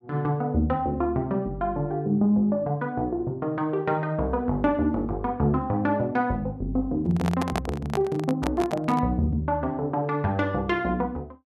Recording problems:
microphone handling noise; from 7 to 9 s; peak 0 dB vs average level

